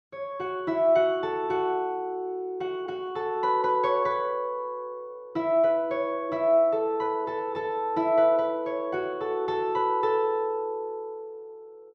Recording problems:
none

